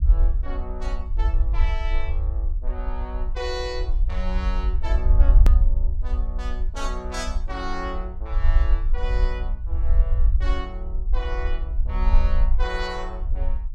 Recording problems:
low-frequency rumble; below 54 Hz, SNR -9 dB
hard cut with a click; at 5.5 s

